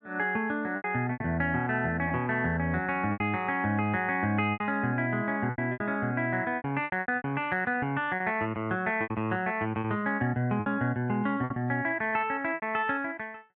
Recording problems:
packet loss; 10% of the sound replaced, filled with repeated pitch periods

